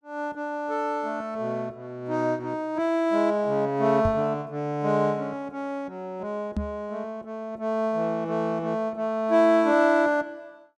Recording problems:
microphone thump; at 4 s and at 6.5 s; peak 0 dB vs average level

